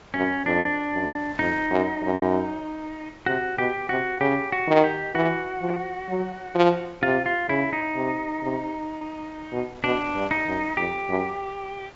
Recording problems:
low-pass filter; nothing above 8 kHz
wind on the microphone; below 1.9 kHz, SNR 22 dB
packet loss; 4% of the sound replaced, filled with repeated pitch periods

